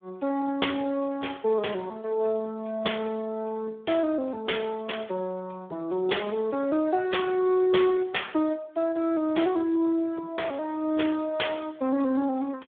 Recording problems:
telephone audio; 240 Hz to 3.4 kHz, Speex

